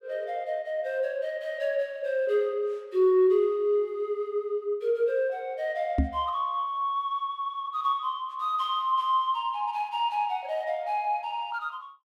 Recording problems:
microphone bump; at 6 s; peak +7 dB vs average level

